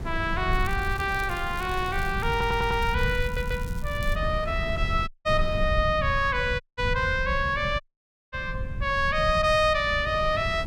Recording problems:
rumble; below 110 Hz, SNR 7 dB
wind on the microphone; below 920 Hz, SNR 20 dB
crackling; from 0.5 to 4 s; loose cable, SNR 22 dB
audio stuttering; at 2.5 s and at 3 s
dropout; at 5 s, at 6.5 s and at 8 s for 0.5 s

